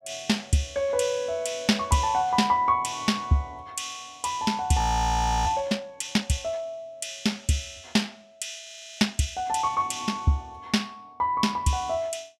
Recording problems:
audio freezing; at 5 s for 0.5 s and at 8.5 s

